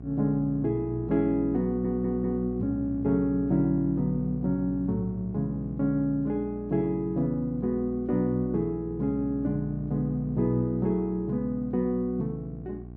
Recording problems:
treble missing; nothing above 8 kHz
hum; 60 Hz, harmonics up to 720 Hz, SNR 12 dB
audio stuttering; at 1.5 s

